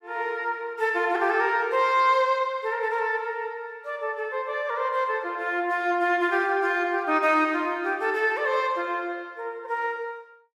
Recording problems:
none

